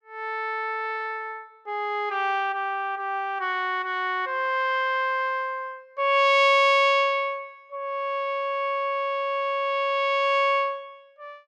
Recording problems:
none

